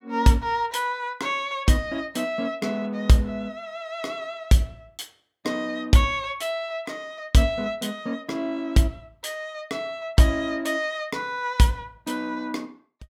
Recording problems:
none

